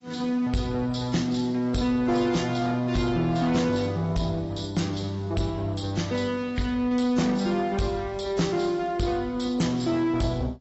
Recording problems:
codec artefacts; AAC, log-spectral distance 3 dB, nothing above 7.8 kHz
distorted audio; soft clipping, signal-to-distortion ratio 11 dB

